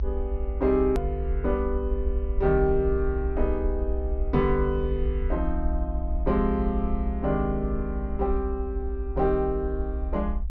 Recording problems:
treble missing; nothing above 6.5 kHz
low-frequency rumble; below 62 Hz, SNR 3 dB
edit click; at 1 s

